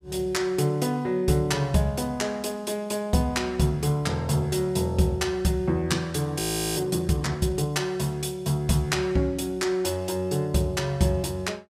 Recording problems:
frozen audio; at 6.5 s

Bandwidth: 15.5 kHz